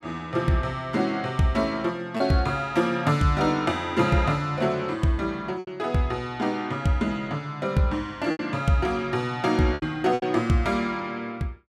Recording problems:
packet loss; 3% of the sound replaced, filled with repeated pitch periods

